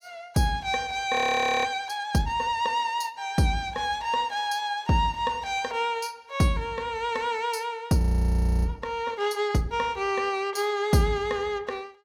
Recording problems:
frozen audio; at 1 s for 0.5 s and at 8 s for 0.5 s

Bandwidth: 16.5 kHz